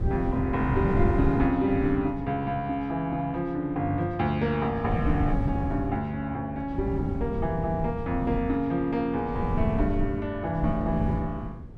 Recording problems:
wind on the microphone; below 180 Hz, SNR 4 dB

